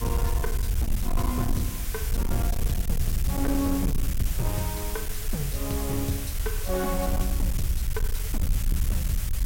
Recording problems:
distorted audio; hard clipping, signal-to-distortion ratio 10 dB
hiss; slope 0 dB per octave, SNR 4 dB
rumble; below 68 Hz, SNR -1 dB

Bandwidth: 16.5 kHz